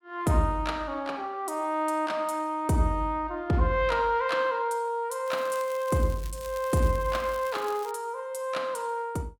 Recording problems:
crackle; from 5.5 to 8 s; loose cable, SNR 19 dB

